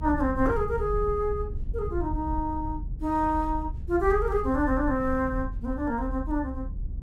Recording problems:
rumble; below 74 Hz, SNR 7 dB

